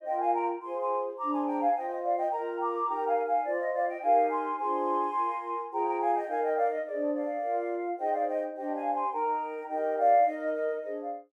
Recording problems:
none

